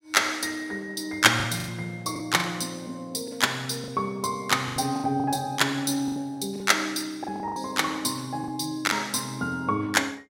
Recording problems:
lost packets; 8% of the sound replaced, filled with the last packet

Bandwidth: 16 kHz